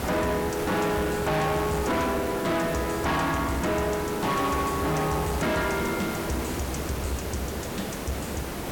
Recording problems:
distorted audio; hard clipping, uneven, signal-to-distortion ratio 8 dB
background hiss; slope -6 dB per octave, SNR 5 dB

